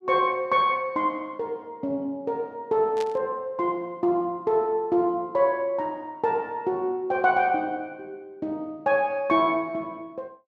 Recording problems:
burst of static; at 3 s; peak -8 dB vs average level

